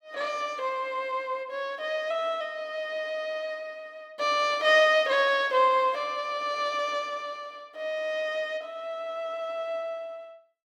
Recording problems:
none

